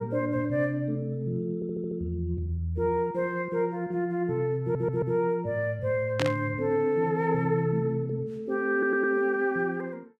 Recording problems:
audio stuttering; at 1.5 s, at 4.5 s and at 8.5 s
static burst; at 6 s; peak +1 dB vs average level

